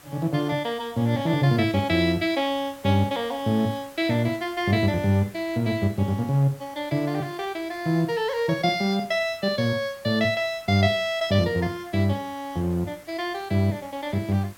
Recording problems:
background hiss; slope -2 dB per octave, SNR 24 dB

